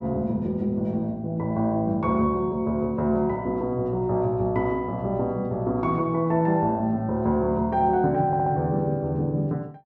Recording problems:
audio stuttering; at 8.5 s

